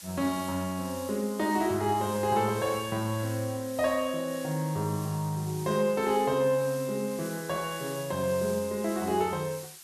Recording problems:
hiss; slope +3 dB per octave, SNR 14 dB

